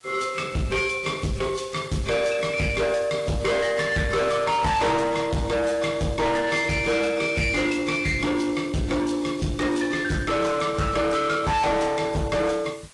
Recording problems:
lossy codec; AAC, log-spectral distance 5 dB, nothing above 10.4 kHz
distorted audio; soft clipping, signal-to-distortion ratio 7 dB
hiss; slope 0 dB per octave, SNR 23 dB

